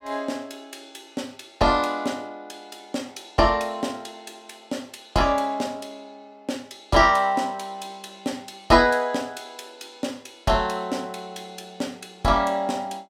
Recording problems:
none

